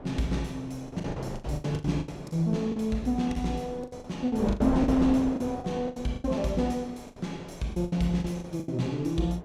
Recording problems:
wind noise; below 640 Hz, SNR 10 dB
lost packets; 15% of the sound replaced, filled with the last packet

